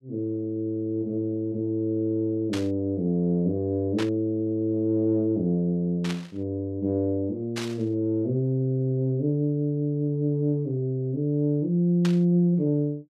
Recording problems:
burst of static; 5 times, first at 2.5 s; peak -4 dB vs average level

